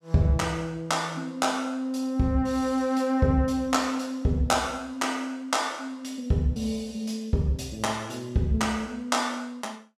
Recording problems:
none

